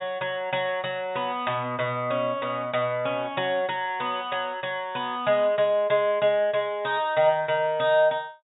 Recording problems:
low-pass filter; nothing above 4 kHz

